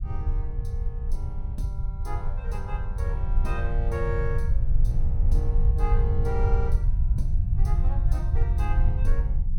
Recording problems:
rumble; below 72 Hz, SNR -10 dB

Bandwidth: 17.5 kHz